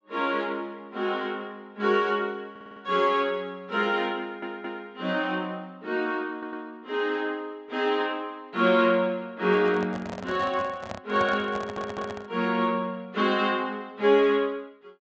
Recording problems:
treble missing; nothing above 8 kHz
audio stuttering; 4 times, first at 2.5 s
microphone handling noise; from 9.5 to 12 s; peak -4 dB vs average level

